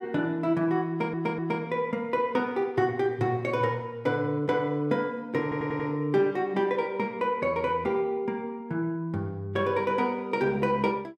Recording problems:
audio stuttering; at 1 s and at 5.5 s

